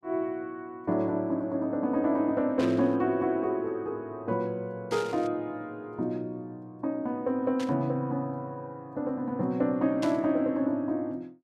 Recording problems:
static burst; 4 times, first at 2.5 s; peak -6 dB vs average level

